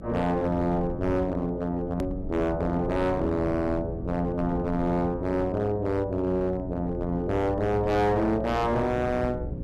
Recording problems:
distorted audio; hard clipping, uneven, signal-to-distortion ratio 10 dB
hum; 60 Hz, harmonics up to 540 Hz, SNR 14 dB
rumble; below 180 Hz, SNR 12 dB
click at an edit; at 2 s

